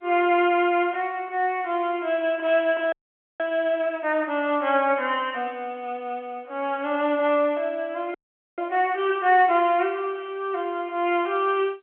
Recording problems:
phone line; 300 Hz to 3.4 kHz, G.711
audio freezing; at 3 s and at 8 s

